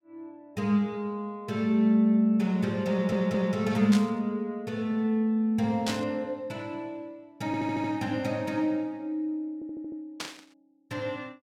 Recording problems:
audio stuttering; at 3 s, at 7.5 s and at 9.5 s
static burst; at 4 s, at 6 s and at 10 s; peak -1 dB vs average level

